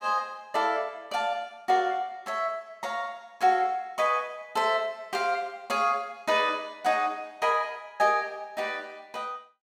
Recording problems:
none

